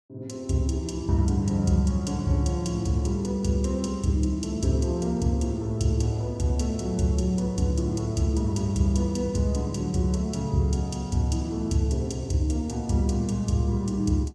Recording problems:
none

